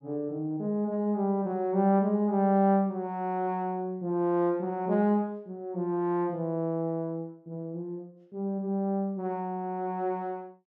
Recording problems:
none

